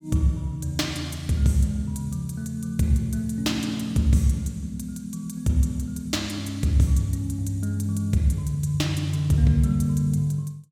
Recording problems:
none

